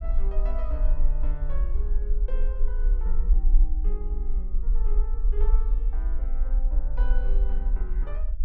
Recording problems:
low-frequency rumble; below 40 Hz, strongest tone 20 Hz, SNR -15 dB

